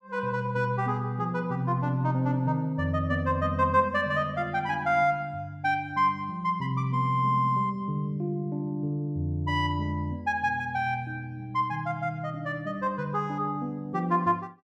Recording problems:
none

